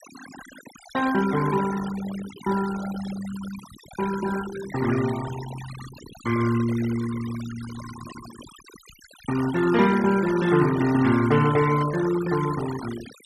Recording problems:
noise reduction artefacts; signal-to-artefact ratio 13 dB

